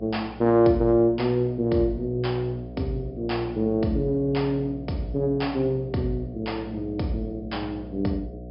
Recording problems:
low-pass filter; nothing above 5.5 kHz
hum; 60 Hz, harmonics up to 720 Hz, SNR 15 dB

